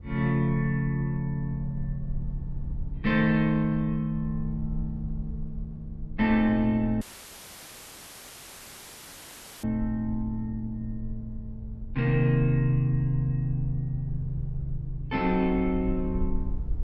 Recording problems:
rumble; below 66 Hz, SNR 12 dB
audio cutting out; at 7 s for 2.5 s

